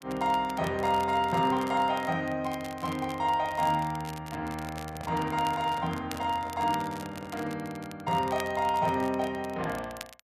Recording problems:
crackling; vinyl, SNR 18 dB
handling noise; from 4.5 to 7.5 s; peak -9 dB vs average level

